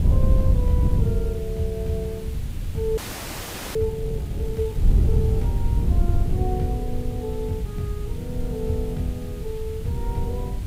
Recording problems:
background hiss; SNR 17 dB
wind on the microphone; below 100 Hz, SNR -4 dB
audio freezing; at 3 s for 1 s

